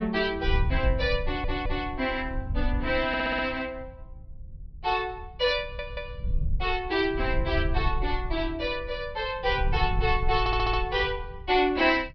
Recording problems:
low-pass filter; nothing above 5.5 kHz
wind on the microphone; below 72 Hz, SNR 6 dB
stutter; 4 times, first at 1 s

